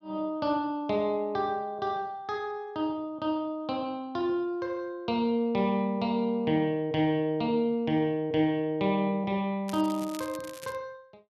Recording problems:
crackling; from 9.5 to 11 s; loose cable, SNR 17 dB

